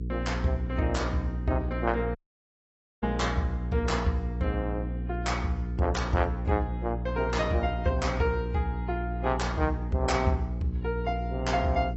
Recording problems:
lossy codec; AAC, log-spectral distance 2 dB, nothing above 7.8 kHz
hum; 60 Hz, harmonics up to 480 Hz, SNR 4 dB
audio cutting out; at 2 s for 1 s

